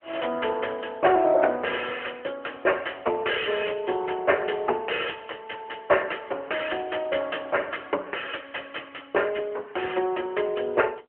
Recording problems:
telephone audio; 320 Hz to 3 kHz, AMR-NB

